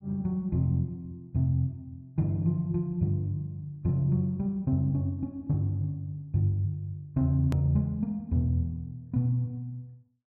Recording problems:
hard cut with a click; at 7.5 s

